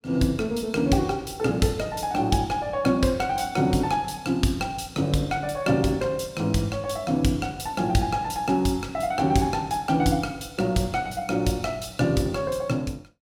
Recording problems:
none

